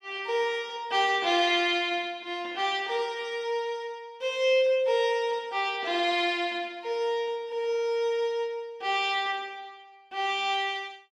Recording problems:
none

